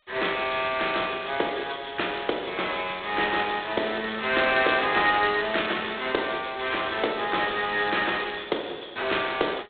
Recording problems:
telephone audio; 300 Hz to 3.6 kHz, G.726

